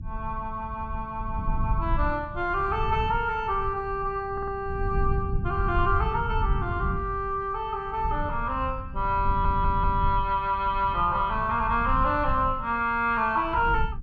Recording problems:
rumble; below 96 Hz, SNR 6 dB
stutter; at 4.5 s and at 9.5 s

